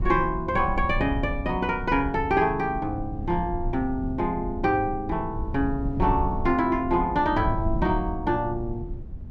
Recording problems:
low-frequency rumble; below 98 Hz, SNR 8 dB

